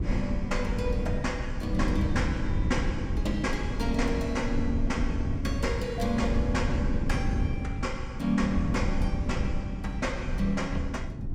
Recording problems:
wind noise; below 130 Hz, SNR 1 dB

